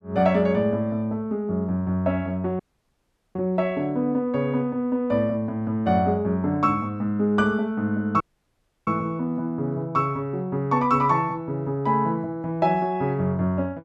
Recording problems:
dropout; at 2.5 s for 1 s and at 8 s for 0.5 s

